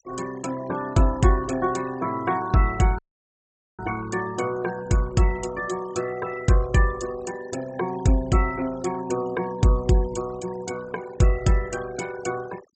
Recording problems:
treble missing; nothing above 8 kHz
noise reduction artefacts; signal-to-artefact ratio 17 dB
audio cutting out; at 3 s for 1 s

